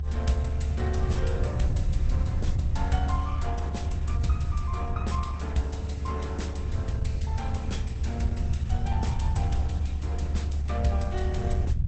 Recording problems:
codec artefacts; Opus, log-spectral distance 3 dB, nothing above 8.2 kHz
low-frequency rumble; below 92 Hz, strongest tone 72 Hz, SNR -5 dB

